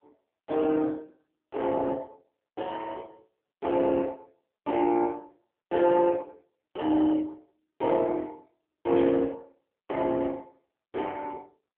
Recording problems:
phone line; 240 Hz to 3.4 kHz, AMR-NB
static burst; at 9 s; peak -9 dB vs average level

